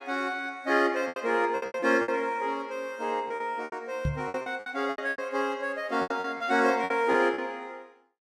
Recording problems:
lost packets; 13% of the sound replaced, filled with repeated pitch periods
microphone bump; at 4 s; peak +2 dB vs average level

